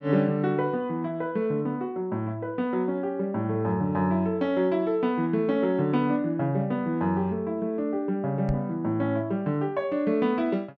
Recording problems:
knock on the microphone; at 8.5 s; peak -1 dB vs average level

